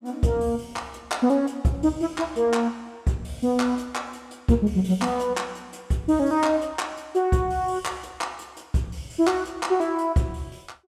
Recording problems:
none

